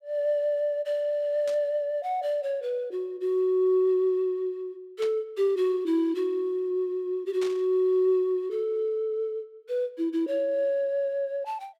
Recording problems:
burst of static; at 1.5 s, at 5 s and at 7.5 s; peak -9 dB vs average level

